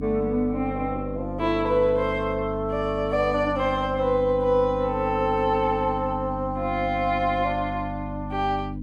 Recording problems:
electrical hum; 50 Hz, harmonics up to 300 Hz, SNR 8 dB

